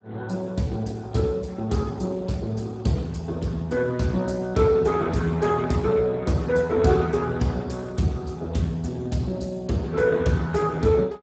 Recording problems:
lossy codec; Speex, log-spectral distance 3 dB, nothing above 7.6 kHz

